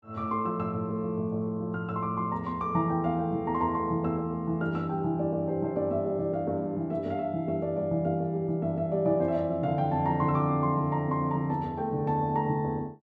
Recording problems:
none

